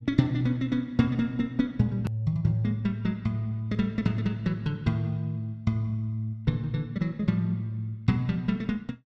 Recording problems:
hard cut with a click; at 2 s

